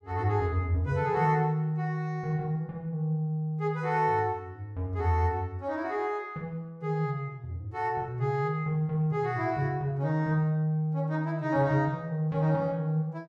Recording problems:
none

